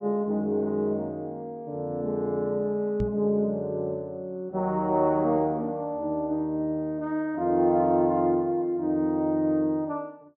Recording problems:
microphone bump; at 3 s; peak 0 dB vs average level

